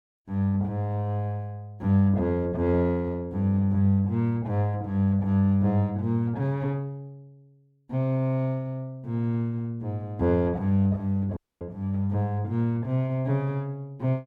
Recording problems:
dropout; at 11 s

